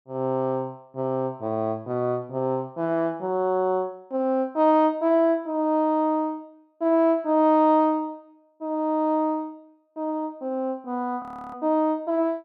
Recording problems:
frozen audio; at 11 s

